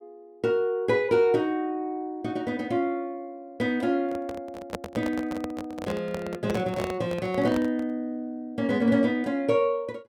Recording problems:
microphone handling noise; from 4 to 8 s; peak -1 dB vs average level

